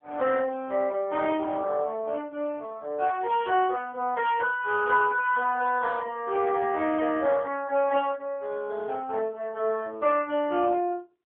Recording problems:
telephone audio; 280 Hz to 3.3 kHz, AMR-NB

